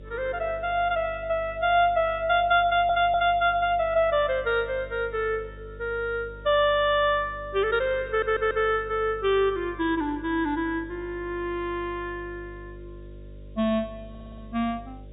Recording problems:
treble cut off; nothing above 4 kHz
hum; 50 Hz, harmonics up to 600 Hz, SNR 19 dB
hiss; SNR 41 dB
stutter; at 2.5 s, at 8 s and at 14 s

